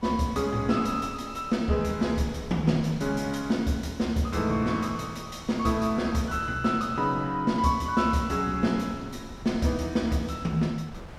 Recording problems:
wind noise; below 410 Hz, SNR 20 dB

